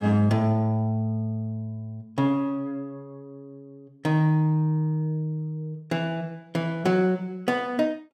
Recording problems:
none

